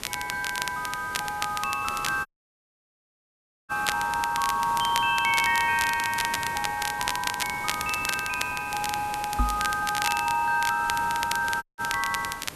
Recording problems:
background hiss; slope -4 dB per octave, SNR 13 dB
crackling; vinyl, SNR 6 dB
audio cutting out; at 2.5 s for 1.5 s and at 12 s
microphone thump; at 9.5 s; peak +3 dB vs average level

